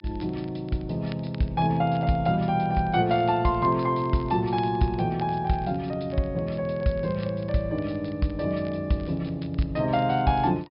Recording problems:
treble cut off; nothing above 5.5 kHz
crackling; vinyl, SNR 27 dB

